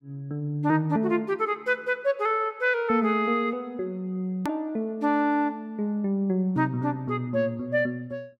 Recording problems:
edit click; at 4.5 s

